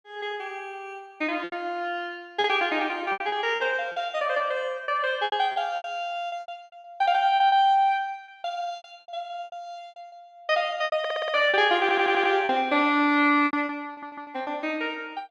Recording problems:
lost packets; 11% of the sound replaced, filled with repeated pitch periods
audio stuttering; at 11 s, at 12 s and at 14 s

